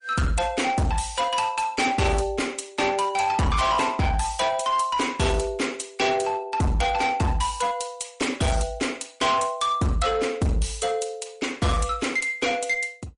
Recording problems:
codec artefacts; MP3, log-spectral distance 4 dB, nothing above 10.1 kHz
distortion; hard clipping, uneven, signal-to-distortion ratio 8 dB

